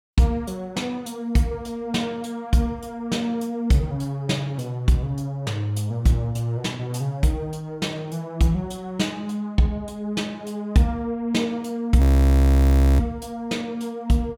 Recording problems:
audio freezing; at 12 s for 1 s

